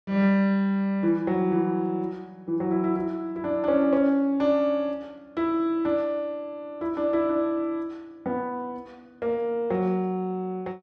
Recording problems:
none

